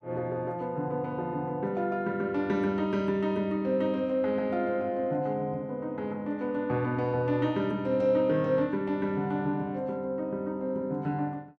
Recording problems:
none

